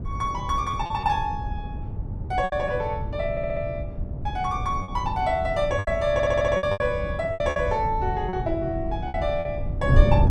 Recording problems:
wind noise; below 110 Hz, SNR 5 dB
lost packets; 8% of the sound replaced, filled with repeated pitch periods
stutter; at 3.5 s and at 6 s

